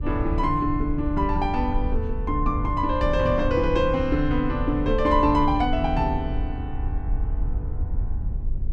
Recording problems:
wind noise; below 70 Hz, SNR 6 dB

